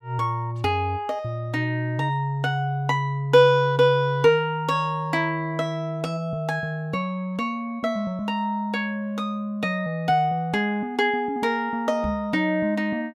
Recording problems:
microphone bump; at 12 s; peak -3 dB vs average level

